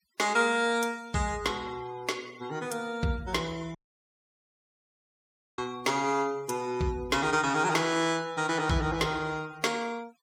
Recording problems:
denoising artefacts; signal-to-artefact ratio 22 dB
audio cutting out; at 4 s for 2 s

